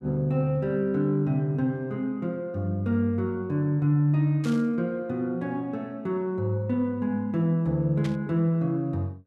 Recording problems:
static burst; at 4.5 s and at 8 s; peak -9 dB vs average level

